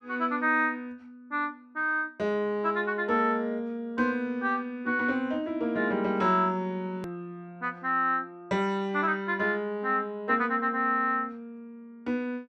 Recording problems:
hard cut with a click; at 7 s

